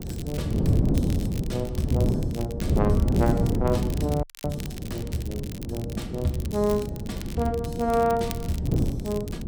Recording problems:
wind on the microphone; below 240 Hz, SNR -1 dB
crackling; vinyl, SNR 15 dB
frozen audio; at 4 s

